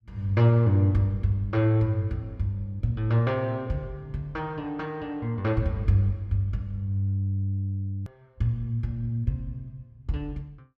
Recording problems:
hard cut with a click; at 8 s

